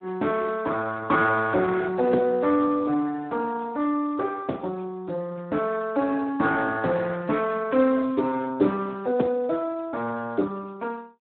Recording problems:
phone line; 220 Hz to 2.6 kHz, Speex

